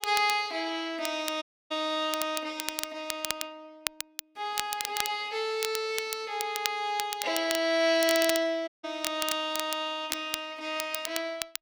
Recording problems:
crackling; vinyl, SNR 6 dB
dropout; at 1.5 s and at 8.5 s

